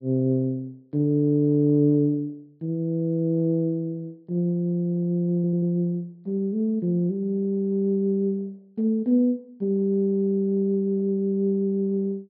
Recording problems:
low-pass filter; nothing above 5.5 kHz
stutter; at 5.5 s

